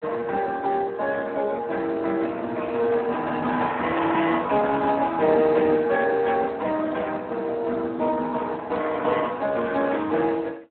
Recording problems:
phone line; 190 Hz to 3.7 kHz, Speex

